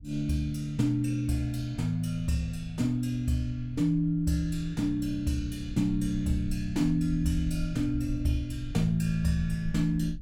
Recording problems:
rumble; below 78 Hz, SNR 13 dB

